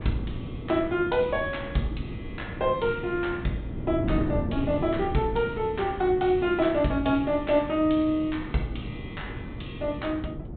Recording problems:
low-pass filter; nothing above 4 kHz
wind noise; below 300 Hz, SNR 9 dB

